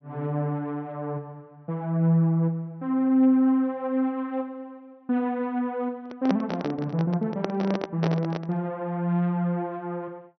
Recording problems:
treble missing; nothing above 5.9 kHz
handling noise; from 6 to 8.5 s; peak +1 dB vs average level

